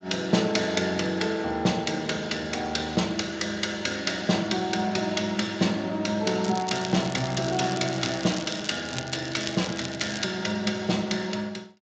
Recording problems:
codec artefacts; Speex, log-spectral distance 8 dB, nothing above 7.3 kHz
crackling; from 6.5 to 10 s; loose cable, SNR 11 dB

